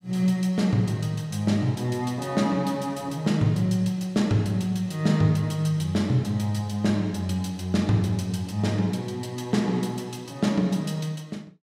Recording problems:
none

